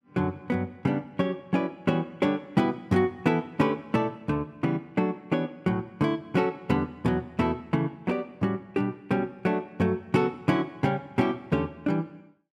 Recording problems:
none

